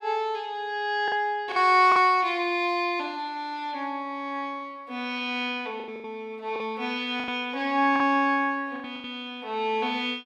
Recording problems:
lost packets; 6% of the sound replaced, filled with the last packet

